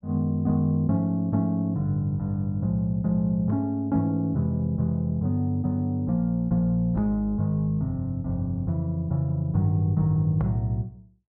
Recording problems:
none

